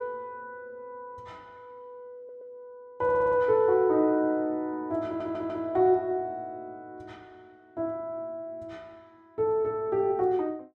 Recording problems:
stutter; at 2 s, at 3 s and at 5 s

